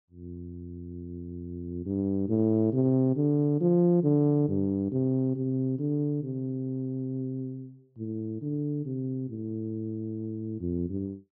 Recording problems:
treble missing; nothing above 5.9 kHz

